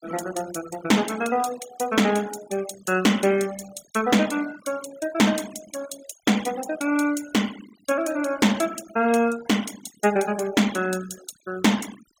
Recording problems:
noise reduction artefacts; signal-to-artefact ratio 17 dB

